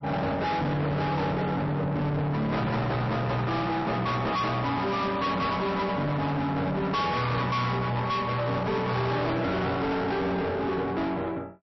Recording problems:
lossy codec; MP3, log-spectral distance 2 dB, nothing above 5.7 kHz
distortion; soft clipping, signal-to-distortion ratio 6 dB

